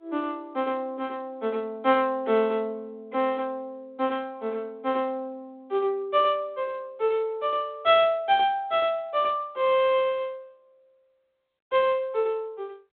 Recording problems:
telephone audio; 240 Hz to 3.9 kHz, G.726

